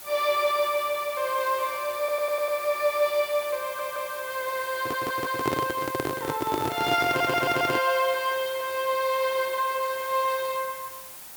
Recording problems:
background hiss; SNR 13 dB
audio stuttering; 4 times, first at 2 s
handling noise; from 5 to 8 s; peak +3 dB vs average level

